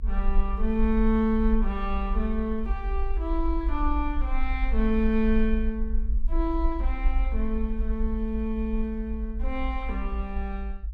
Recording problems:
rumble; below 52 Hz, SNR 2 dB

